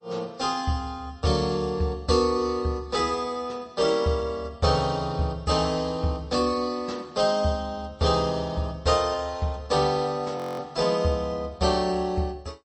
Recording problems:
lossy codec; MP3, log-spectral distance 3 dB, nothing above 8 kHz
audio freezing; at 10 s

